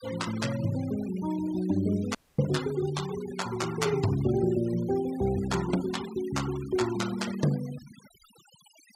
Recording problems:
noise reduction artefacts; signal-to-artefact ratio 15 dB
dropout; at 2 s

